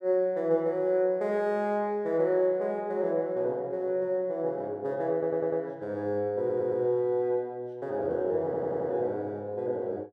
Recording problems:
stutter; at 5 s, at 6.5 s and at 8.5 s

